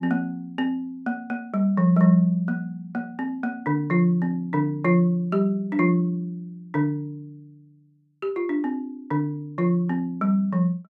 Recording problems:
none

